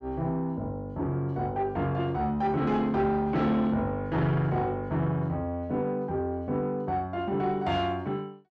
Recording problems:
distortion; soft clipping, signal-to-distortion ratio 11 dB

